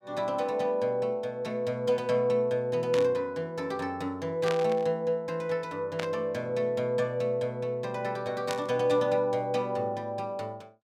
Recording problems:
static burst; 4 times, first at 3 s; peak -2 dB vs average level

